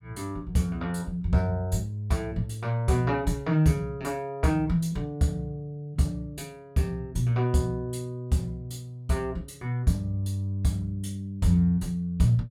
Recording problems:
none

